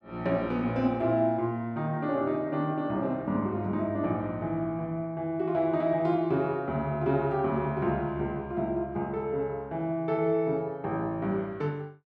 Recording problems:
none

